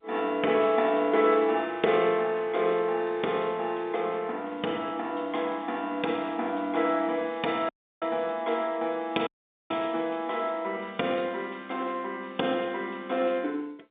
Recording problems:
telephone audio; 220 Hz to 3.7 kHz, G.711
audio cutting out; at 7.5 s and at 9.5 s

